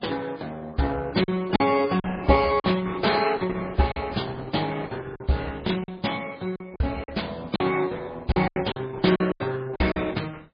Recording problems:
lossy compression; Opus, then MP3, log-spectral distance 5 dB, nothing above 4.6 kHz
packet loss; 8% of the sound replaced, filled with silence

